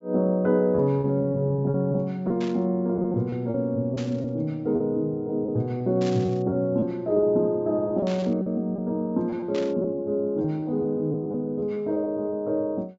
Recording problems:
treble missing; nothing above 8 kHz
packet loss; 8% of the sound replaced, filled with repeated pitch periods
static burst; 5 times, first at 2.5 s; peak -8 dB vs average level

